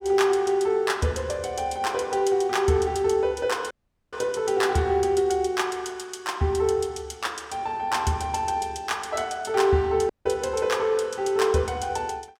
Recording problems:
dropout; at 3.5 s and at 10 s

